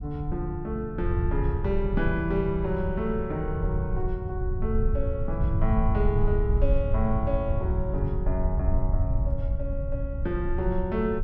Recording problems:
low-frequency rumble; below 86 Hz, SNR -1 dB

